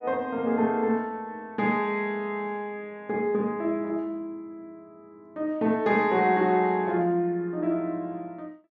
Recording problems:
none

